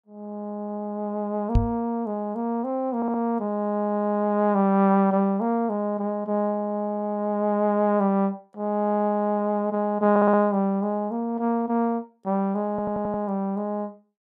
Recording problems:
knock on the microphone; at 1.5 s; peak +6 dB vs average level
stutter; at 3 s, at 10 s and at 13 s

